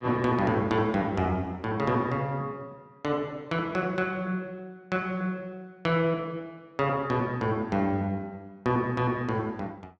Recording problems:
none

